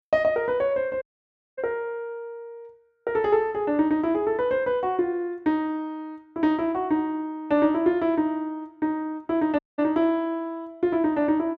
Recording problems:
dropout; at 1 s for 0.5 s and at 9.5 s

